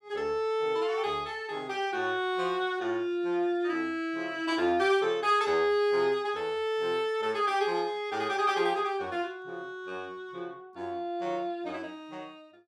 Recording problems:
none

